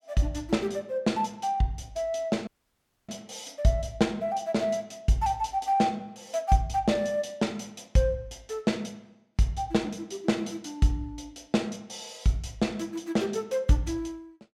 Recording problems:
audio cutting out; at 2.5 s for 0.5 s

